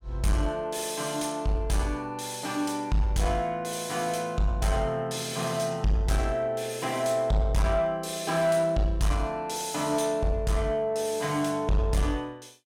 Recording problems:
distortion; soft clipping, signal-to-distortion ratio 10 dB

